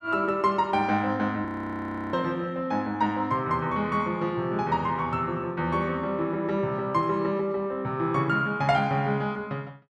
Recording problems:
frozen audio; at 1.5 s for 0.5 s

